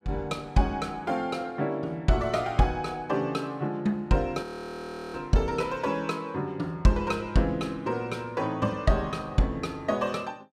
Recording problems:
audio freezing; at 4.5 s for 0.5 s

